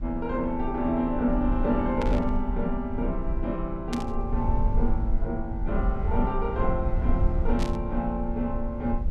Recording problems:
low-frequency rumble; below 64 Hz, SNR 2 dB
static burst; at 2 s, at 4 s and at 7.5 s; peak -3 dB vs average level

